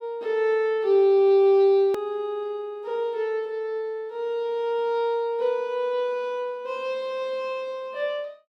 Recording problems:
hard cut with a click; at 2 s

